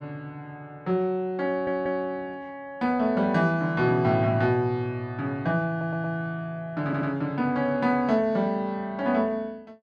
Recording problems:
stutter; at 1.5 s, at 5.5 s and at 7 s

